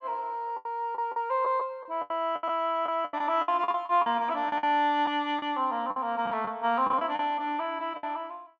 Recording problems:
lost packets; 12% of the sound replaced, filled with the last packet

